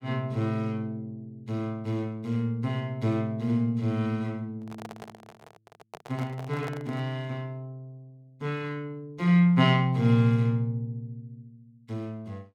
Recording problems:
microphone handling noise; from 4.5 to 7 s; peak -7 dB vs average level

